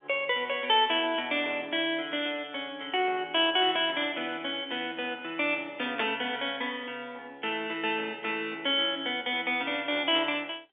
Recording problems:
phone line; 260 Hz to 3.6 kHz, G.711
burst of static; at 6 s; peak 0 dB vs average level

